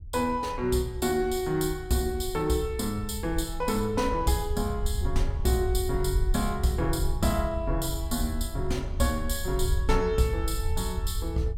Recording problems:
low-frequency rumble; below 72 Hz, SNR 5 dB

